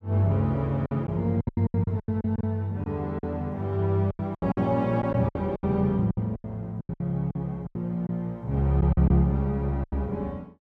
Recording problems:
lost packets; 14% of the sound replaced, filled with silence

